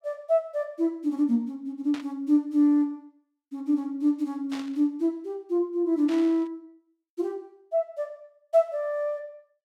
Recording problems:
static burst; at 2 s, at 4.5 s and at 6 s; peak -10 dB vs average level

